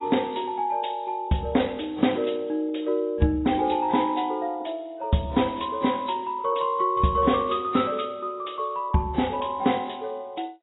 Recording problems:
codec artefacts; AAC, log-spectral distance 6 dB, nothing above 3.8 kHz

